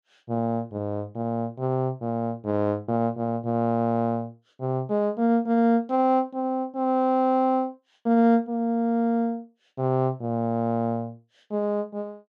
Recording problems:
none

